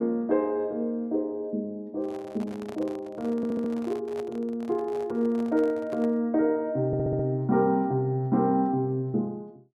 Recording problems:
handling noise; from 2 to 6 s; peak -11 dB vs average level
audio stuttering; at 3.5 s and at 7 s

